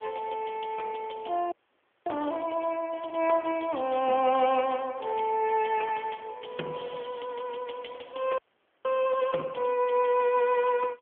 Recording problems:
telephone audio; 240 Hz to 3.3 kHz, AMR-NB
frozen audio; at 1.5 s for 0.5 s and at 8.5 s

